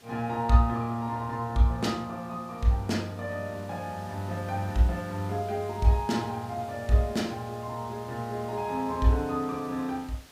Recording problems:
hiss; slope -2 dB per octave, SNR 22 dB

